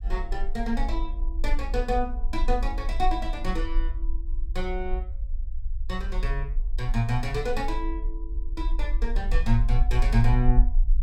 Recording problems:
rumble; below 42 Hz, SNR 0 dB

